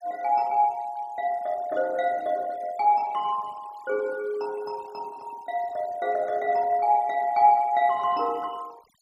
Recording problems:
noise reduction artefacts; signal-to-artefact ratio 26 dB

